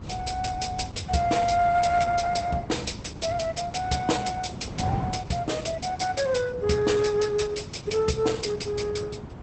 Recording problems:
lossy codec; Opus, log-spectral distance 5 dB, nothing above 8.2 kHz
wind on the microphone; below 230 Hz, SNR 10 dB

